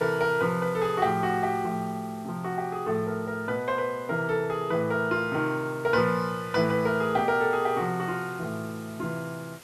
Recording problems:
background hiss; SNR 22 dB

